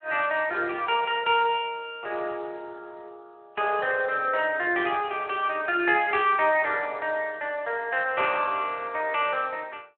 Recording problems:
phone line; 320 Hz to 3.3 kHz, Speex

